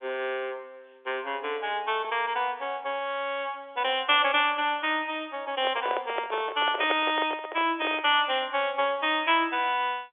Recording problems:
phone line; 300 Hz to 3.5 kHz, G.711
microphone handling noise; from 5.5 to 8 s; peak +2 dB vs average level

